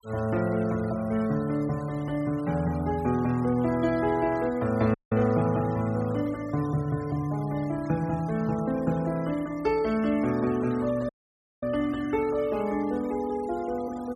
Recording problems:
noise reduction artefacts; signal-to-artefact ratio 21 dB
dropout; at 5 s and at 11 s for 0.5 s

